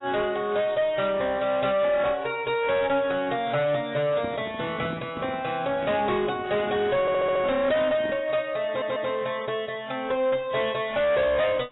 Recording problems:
lossy compression; AAC, log-spectral distance 4 dB, nothing above 3.8 kHz
distortion; hard clipping, uneven, signal-to-distortion ratio 10 dB
handling noise; from 4 to 8.5 s; peak -4 dB vs average level
audio stuttering; at 7 s and at 8.5 s

